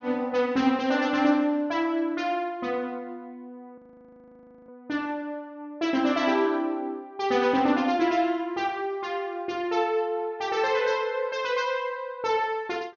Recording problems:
treble cut off; nothing above 6.6 kHz
frozen audio; at 4 s for 1 s

